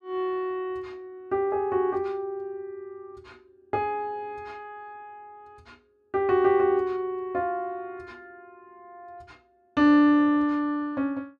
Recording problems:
none

